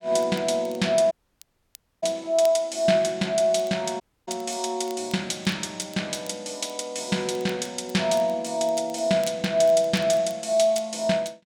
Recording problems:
crackle; vinyl, SNR 24 dB
audio cutting out; at 1 s for 1 s and at 4 s

